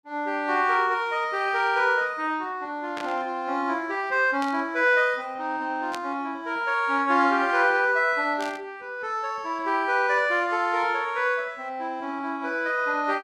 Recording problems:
static burst; 4 times, first at 3 s; peak -7 dB vs average level

